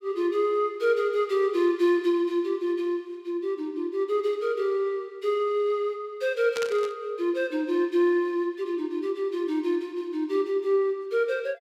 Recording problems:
burst of static; at 6.5 s; peak -4 dB vs average level

